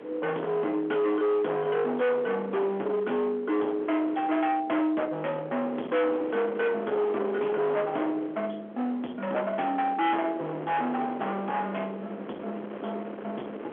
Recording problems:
telephone audio; 860 Hz to 3.3 kHz, G.711
distorted audio; hard clipping, signal-to-distortion ratio 8 dB
wind on the microphone; below 840 Hz, SNR 12 dB

